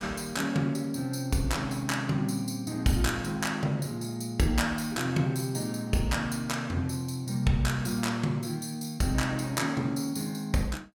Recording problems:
none

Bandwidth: 17.5 kHz